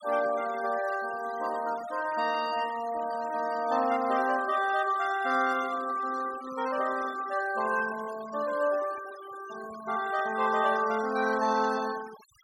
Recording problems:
noise reduction artefacts; signal-to-artefact ratio 17 dB

